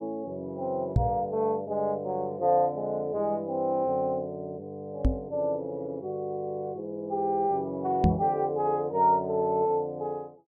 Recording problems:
microphone thump; at 1 s, at 5 s and at 8 s; peak +9 dB vs average level

